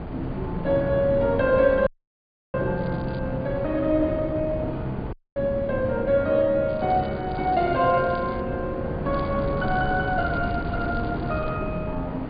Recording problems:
treble cut off; nothing above 4.8 kHz
wind on the microphone; below 360 Hz, SNR 8 dB
audio cutting out; at 2 s for 0.5 s and at 5 s
crackling; at 3 s, from 6.5 to 8.5 s and from 9 to 11 s; loose cable, SNR 27 dB

